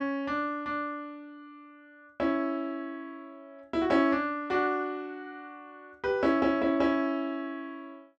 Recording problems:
none

